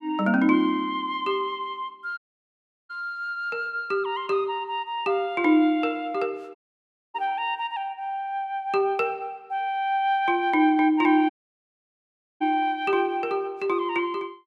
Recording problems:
dropout; at 2 s for 0.5 s, at 6.5 s for 0.5 s and at 11 s for 1 s

